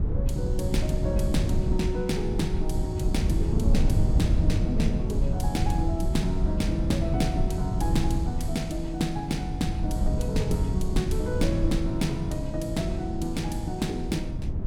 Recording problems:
rumble; below 110 Hz, SNR -1 dB

